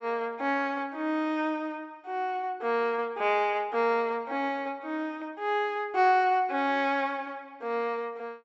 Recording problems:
low-pass filter; nothing above 7.6 kHz

